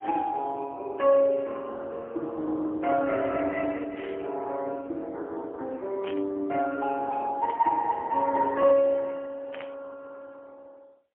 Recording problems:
phone line; 260 Hz to 3.4 kHz, AMR-NB, then MP3
static burst; 4 times, first at 4 s; peak -9 dB vs average level

